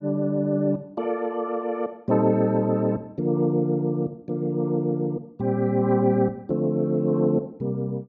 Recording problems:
none

